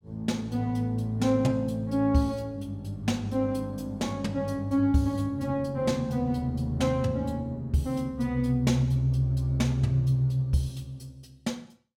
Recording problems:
none

